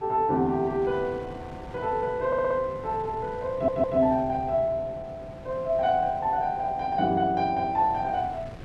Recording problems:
wind noise; below 450 Hz, SNR 18 dB
stutter; at 2.5 s and at 3.5 s

